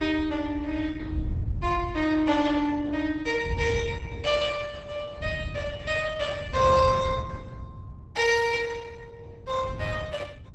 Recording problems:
codec artefacts; Opus, log-spectral distance 3 dB, nothing above 12 kHz
wind noise; below 110 Hz, SNR 8 dB

